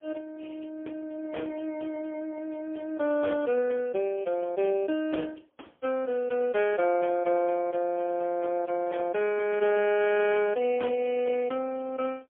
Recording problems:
telephone audio; 240 Hz to 3.1 kHz, AMR-NB, then MP3

